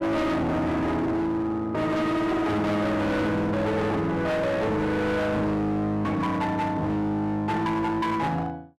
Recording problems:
distorted audio; hard clipping, uneven, signal-to-distortion ratio 6 dB

